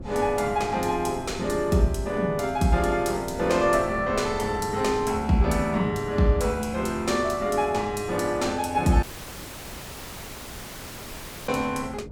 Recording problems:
wind noise; below 280 Hz, SNR 15 dB
dropout; at 9 s for 2.5 s

